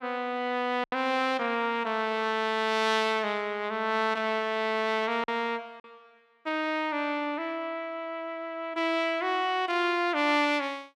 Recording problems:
lost packets; 1.5% of the sound replaced, filled with silence

